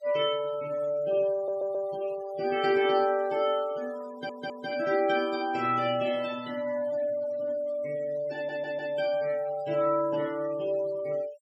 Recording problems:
denoising artefacts; signal-to-artefact ratio 20 dB
stutter; at 1.5 s, at 4 s and at 8.5 s

